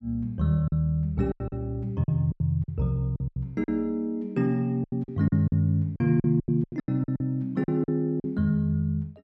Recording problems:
lost packets; 13% of the sound replaced, filled with silence

